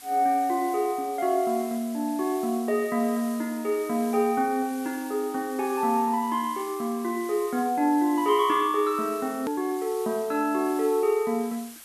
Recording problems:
hiss; slope +1 dB per octave, SNR 18 dB
hard cut with a click; at 9.5 s

